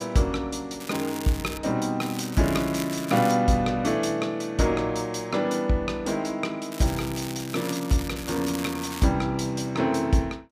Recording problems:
crackling; at 1 s, from 2 to 3.5 s and from 6.5 to 9 s; loose cable, SNR 12 dB

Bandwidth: 15 kHz